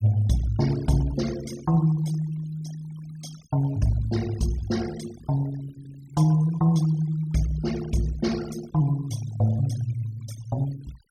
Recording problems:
denoising artefacts; signal-to-artefact ratio 19 dB

